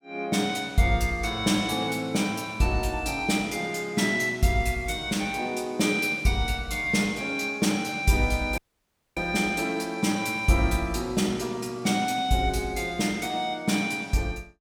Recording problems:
audio cutting out; at 8.5 s for 0.5 s

